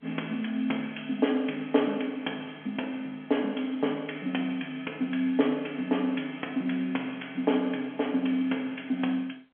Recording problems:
telephone audio; 220 Hz to 3.3 kHz, G.711

